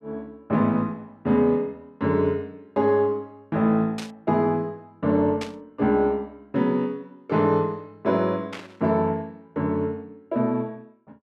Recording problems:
static burst; at 4 s, at 5.5 s and at 8.5 s; peak -5 dB vs average level

